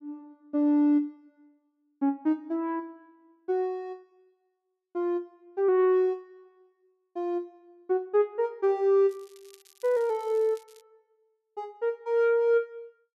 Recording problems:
crackle; from 9 to 11 s; loose cable, SNR 29 dB

